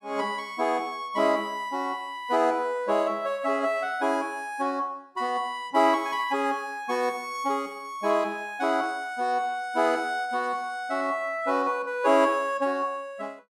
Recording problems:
none

